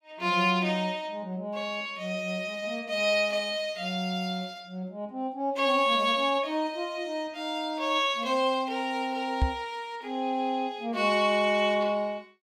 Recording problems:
microphone bump; at 9.5 s; peak +5 dB vs average level

